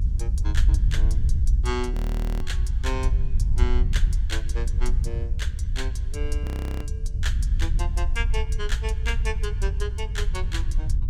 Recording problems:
low-frequency rumble; below 60 Hz, strongest tone 58 Hz, SNR 0 dB
wind on the microphone; below 66 Hz, SNR -8 dB
frozen audio; at 2 s and at 6.5 s

